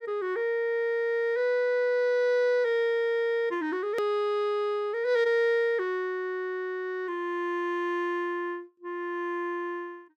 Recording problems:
edit click; at 4 s

